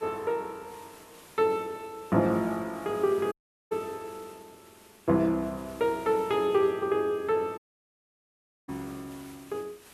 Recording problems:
hiss; slope -2 dB per octave, SNR 23 dB
audio cutting out; at 3.5 s and at 7.5 s for 1 s

